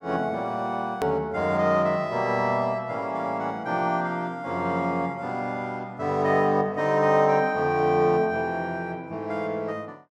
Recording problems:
edit click; at 1 s

